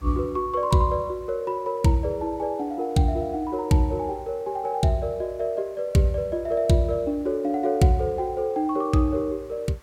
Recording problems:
background hiss; slope -4 dB per octave, SNR 29 dB

